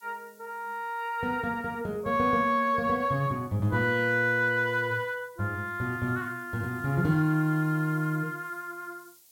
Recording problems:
background hiss; SNR 28 dB

